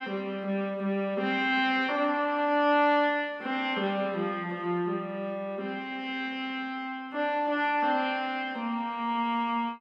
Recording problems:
none

